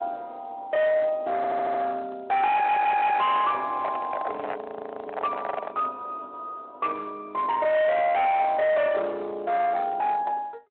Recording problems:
phone line; 390 Hz to 4 kHz, Speex
distorted audio; hard clipping, signal-to-distortion ratio 8 dB
audio stuttering; at 1.5 s and at 2.5 s
microphone handling noise; from 4 to 5.5 s; peak -1 dB vs average level
audio freezing; at 4.5 s

